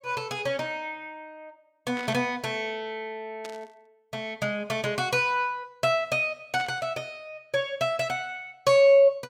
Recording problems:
static burst; at 2 s, at 3.5 s and at 6.5 s; peak -10 dB vs average level

